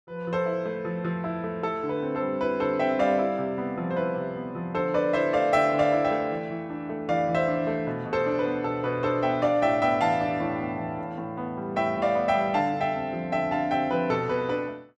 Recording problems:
none

